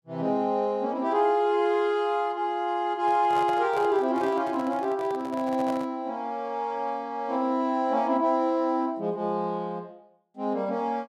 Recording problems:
handling noise; from 3 to 6 s; peak -5 dB vs average level

